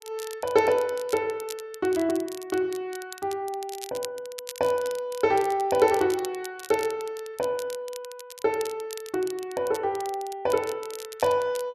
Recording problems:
crackle; vinyl, SNR 15 dB

